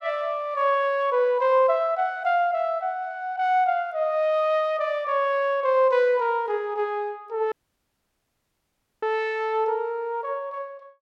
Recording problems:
audio cutting out; at 7.5 s for 1.5 s

